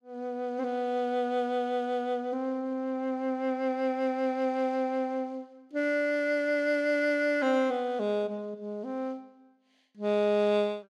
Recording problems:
none

